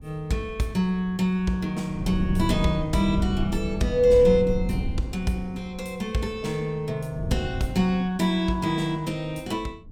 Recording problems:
wind on the microphone; below 150 Hz, SNR 7 dB

